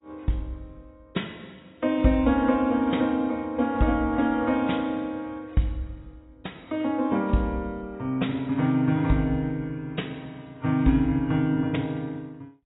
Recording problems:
codec artefacts; AAC, log-spectral distance 2 dB, nothing above 3.8 kHz

